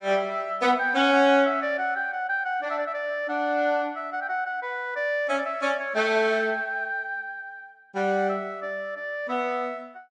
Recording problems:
none

